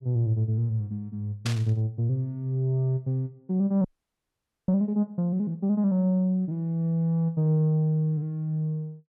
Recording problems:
static burst; at 1.5 s; peak -2 dB vs average level
audio freezing; at 4 s for 1 s

